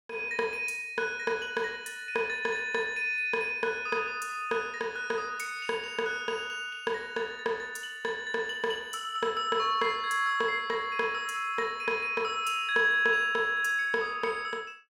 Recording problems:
none

